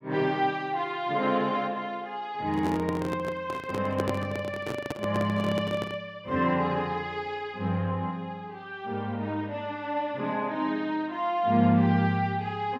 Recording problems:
microphone handling noise; from 2.5 to 6 s; peak +3 dB vs average level

